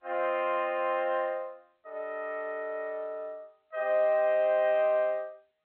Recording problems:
telephone audio; 300 Hz to 3.7 kHz, G.711

